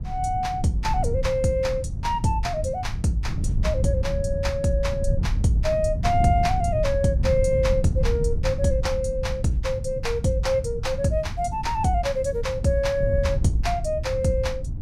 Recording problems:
wind noise; below 110 Hz, SNR 4 dB

